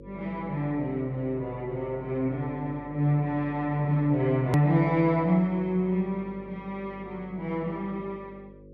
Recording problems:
hum; 50 Hz, harmonics up to 550 Hz, SNR 19 dB
edit click; at 4.5 s

